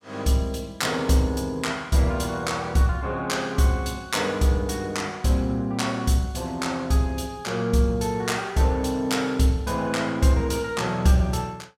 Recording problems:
none

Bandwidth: 16 kHz